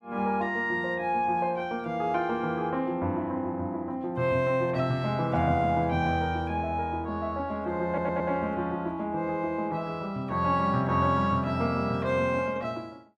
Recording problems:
audio stuttering; at 8 s

